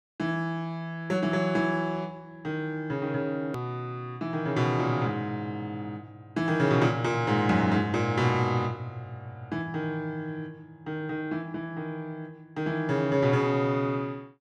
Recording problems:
click at an edit; at 3.5 s

